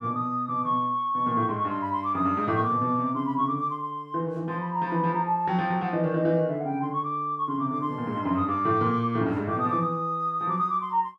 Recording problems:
none

